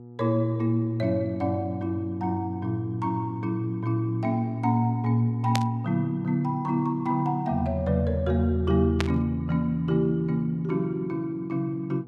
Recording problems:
hum; 60 Hz, harmonics up to 840 Hz, SNR 19 dB
static burst; at 5.5 s and at 9 s; peak +2 dB vs average level

